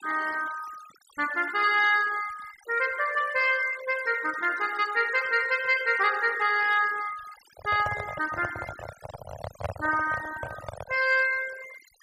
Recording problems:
noise reduction artefacts; signal-to-artefact ratio 17 dB
handling noise; from 7.5 to 11 s; peak -2 dB vs average level

